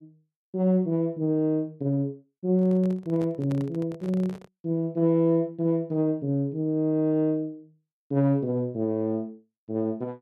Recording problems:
microphone handling noise; from 2.5 to 4.5 s; peak -9 dB vs average level

